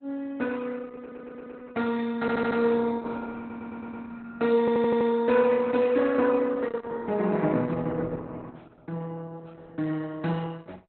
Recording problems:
lossy compression; Opus, log-spectral distance 3 dB, nothing above 4 kHz
audio stuttering; 4 times, first at 1 s

